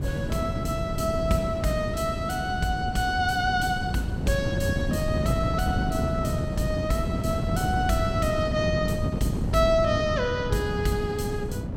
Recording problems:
wind on the microphone; below 240 Hz, SNR 2 dB

